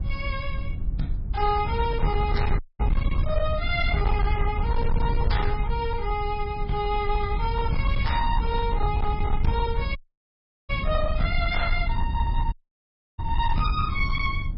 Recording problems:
lossy codec; MP3, log-spectral distance 2 dB, nothing above 5.2 kHz
distortion; hard clipping, signal-to-distortion ratio 12 dB
low-frequency rumble; below 80 Hz, SNR 0 dB
dropout; at 2.5 s, at 10 s for 0.5 s and at 13 s for 0.5 s

